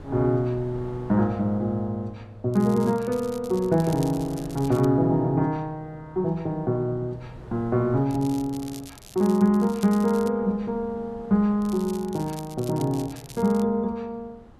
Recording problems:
wind on the microphone; below 410 Hz, SNR 22 dB
crackle; from 2.5 to 5 s, from 8 to 10 s and from 12 to 14 s; loose cable, SNR 20 dB

